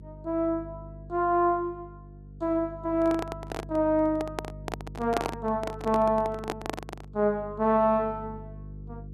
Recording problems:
hum; 50 Hz, harmonics up to 500 Hz, SNR 16 dB
microphone handling noise; from 3 to 7 s; peak +3 dB vs average level

